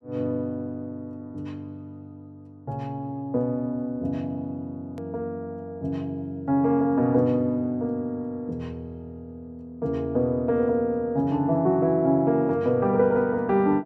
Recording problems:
click at an edit; at 5 s

